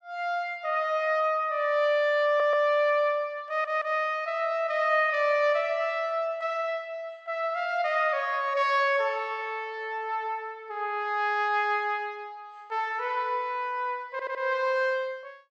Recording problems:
audio stuttering; at 2.5 s, at 3.5 s and at 14 s

